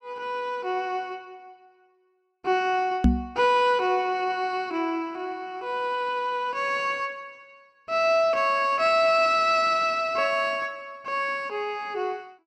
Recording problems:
knock on the microphone; at 3 s; peak +9 dB vs average level

